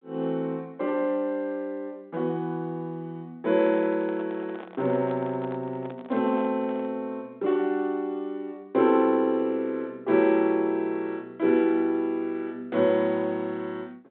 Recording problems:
phone line; 190 Hz to 3.7 kHz, G.726
handling noise; from 3.5 to 7 s; peak -12 dB vs average level

